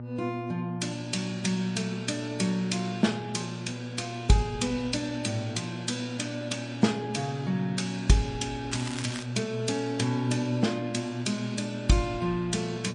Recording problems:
lossy compression; MP3, log-spectral distance 3 dB, nothing above 8.2 kHz
electrical hum; 60 Hz, harmonics up to 840 Hz, SNR 10 dB
crackle; at 8.5 s; loose cable, SNR 11 dB

